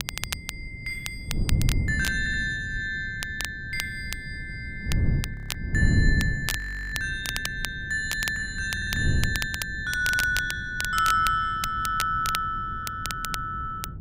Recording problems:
wind on the microphone; below 150 Hz, SNR 4 dB
crackle; vinyl, SNR 7 dB
stutter; 4 times, first at 2 s
frozen audio; at 5.5 s and at 6.5 s

